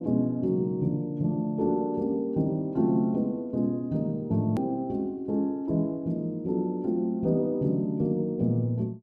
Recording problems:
click at an edit; at 4.5 s

